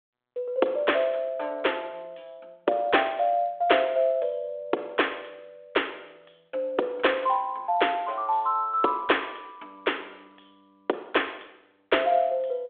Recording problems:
telephone audio; 320 Hz to 3.5 kHz, G.726

